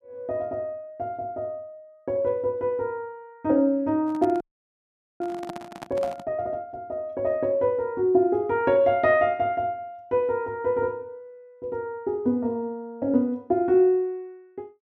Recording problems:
handling noise; from 4 to 6.5 s; peak -7 dB vs average level
audio freezing; at 4.5 s for 1 s

